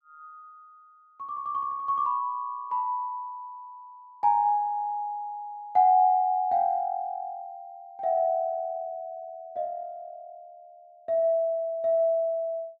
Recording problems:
none

